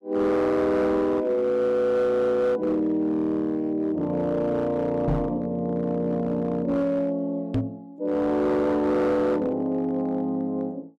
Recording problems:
distortion; hard clipping, signal-to-distortion ratio 12 dB
microphone thump; at 5 s and at 7.5 s; peak +3 dB vs average level

